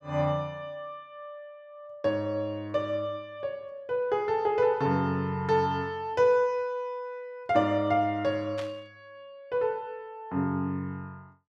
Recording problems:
burst of static; at 8.5 s; peak -8 dB vs average level

